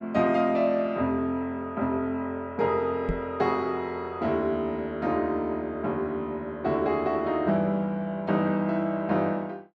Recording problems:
microphone bump; at 3 s; peak +1 dB vs average level

